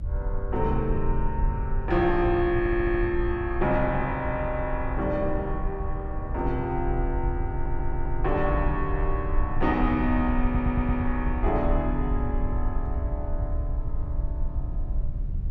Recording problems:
low-frequency rumble; below 64 Hz, SNR 3 dB
stutter; at 2.5 s, at 7.5 s and at 10 s

